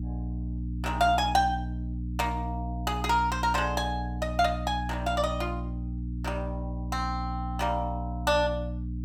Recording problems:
hum; 60 Hz, harmonics up to 300 Hz, SNR 5 dB

